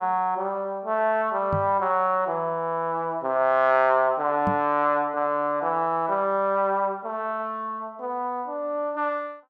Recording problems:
knock on the microphone; at 1.5 s and at 4.5 s; peak 0 dB vs average level

